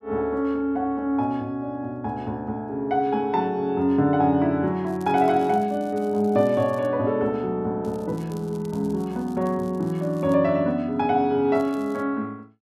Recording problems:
crackling; from 5 to 7 s, from 8 to 10 s and at 12 s; loose cable, SNR 29 dB

